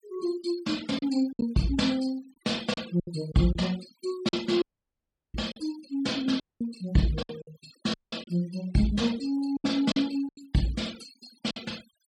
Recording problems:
noise reduction artefacts; signal-to-artefact ratio 18 dB
packet loss; 9% of the sound replaced, filled with silence
dropout; at 4.5 s for 0.5 s, at 6.5 s and at 8 s

